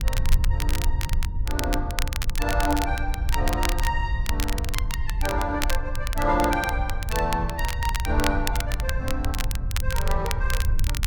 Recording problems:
low-frequency rumble; below 70 Hz, SNR 0 dB
crackling; vinyl, SNR 5 dB

